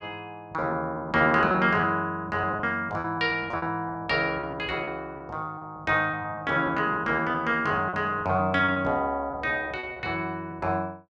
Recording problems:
packet loss; 10% of the sound replaced, filled with repeated pitch periods

